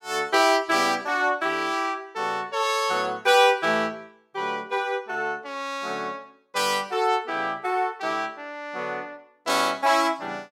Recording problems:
none

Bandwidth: 17 kHz